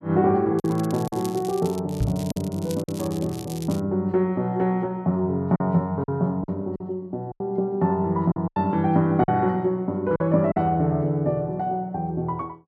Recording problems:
packet loss; 5% of the sound replaced, filled with silence
crackling; from 0.5 to 2 s and from 2 to 4 s; loose cable, SNR 18 dB
knock on the microphone; at 2 s; peak +3 dB vs average level

